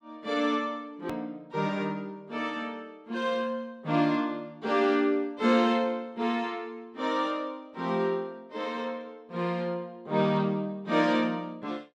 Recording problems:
edit click; at 1 s

